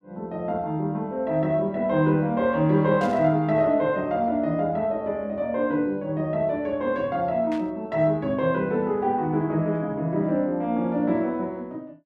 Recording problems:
burst of static; at 3 s and at 7.5 s; peak -12 dB vs average level

